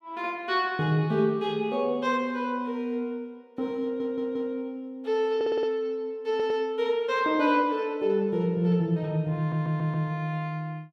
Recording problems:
stutter; 4 times, first at 4 s

